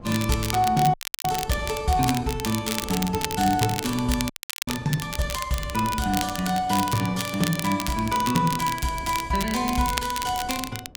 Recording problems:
wind on the microphone; below 350 Hz, SNR 18 dB
crackling; vinyl, SNR 7 dB
frozen audio; at 1 s and at 4.5 s

